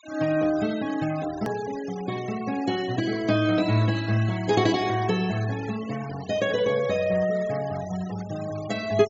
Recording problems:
treble missing; nothing above 7.2 kHz
noise reduction artefacts; signal-to-artefact ratio 16 dB
click at an edit; at 1.5 s

